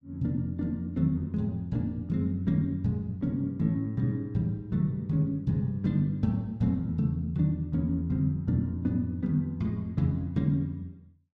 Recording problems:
none

